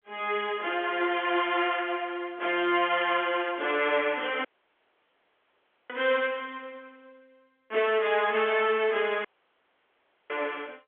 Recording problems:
phone line; 300 Hz to 3.4 kHz, G.711
dropout; at 4.5 s for 1.5 s and at 9.5 s for 1 s

